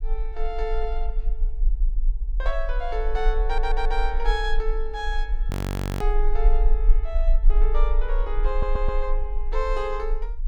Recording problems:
rumble; below 36 Hz, strongest tone 22 Hz, SNR -4 dB
stutter; at 3.5 s and at 8.5 s
frozen audio; at 5.5 s for 0.5 s

